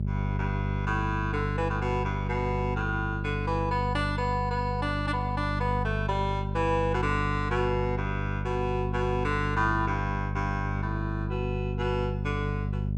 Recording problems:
electrical hum; 50 Hz, harmonics up to 400 Hz, SNR 1 dB

